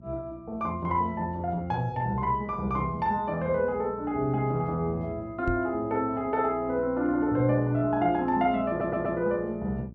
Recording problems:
electrical hum; 60 Hz, harmonics up to 660 Hz, SNR 18 dB
microphone thump; at 5.5 s; peak 0 dB vs average level
stutter; at 8.5 s

